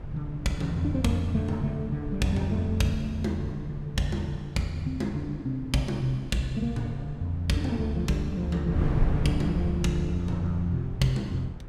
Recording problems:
wind noise; below 150 Hz, SNR 8 dB

